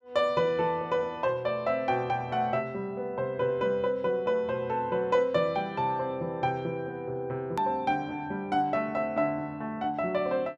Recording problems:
edit click; at 7.5 s

